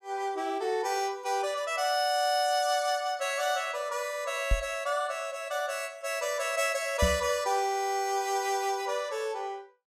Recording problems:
microphone bump; at 4.5 s and at 7 s; peak +5 dB vs average level

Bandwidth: 14.5 kHz